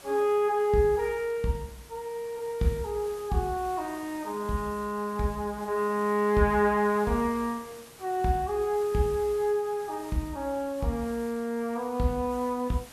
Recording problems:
hiss; slope -3 dB per octave, SNR 20 dB

